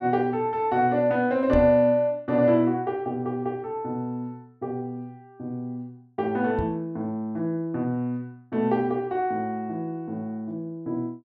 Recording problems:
microphone bump; at 1.5 s and at 6.5 s; peak -1 dB vs average level

